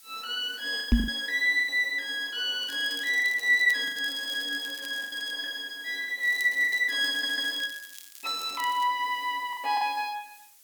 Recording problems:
background hiss; slope +3 dB per octave, SNR 24 dB
lost packets; 7% of the sound replaced, filled with the last packet
microphone thump; at 1 s; peak +8 dB vs average level
crackling; from 2.5 to 5.5 s and from 6 to 9 s; loose cable, SNR 19 dB
stutter; at 7 s

